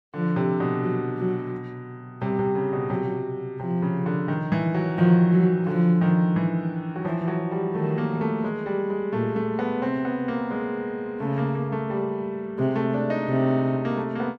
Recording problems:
none

